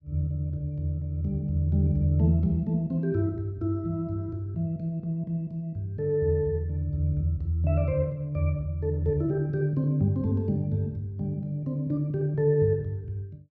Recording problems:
none

